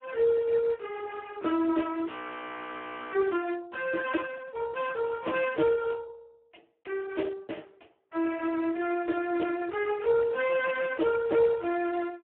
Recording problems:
phone line; 240 Hz to 3.2 kHz, Speex
frozen audio; at 2 s for 1 s

